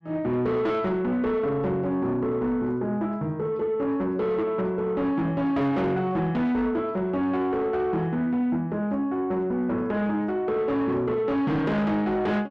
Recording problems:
distorted audio; soft clipping, signal-to-distortion ratio 10 dB

